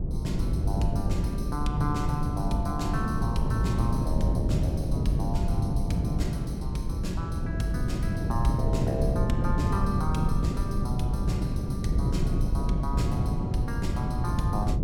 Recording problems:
wind on the microphone; below 170 Hz, SNR -5 dB

